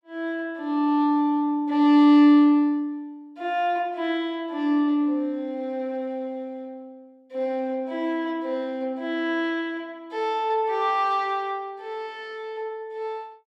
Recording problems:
none

